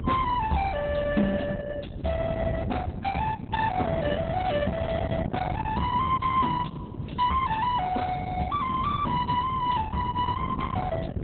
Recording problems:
codec artefacts; Opus, log-spectral distance 3 dB, nothing above 4 kHz
distorted audio; soft clipping, signal-to-distortion ratio 10 dB
hum; 50 Hz, harmonics up to 600 Hz, SNR 23 dB
rumble; below 600 Hz, SNR 6 dB

